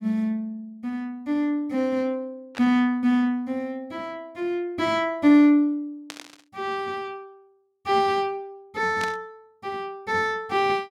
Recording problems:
burst of static; at 2.5 s, at 6 s and at 9 s; peak -5 dB vs average level

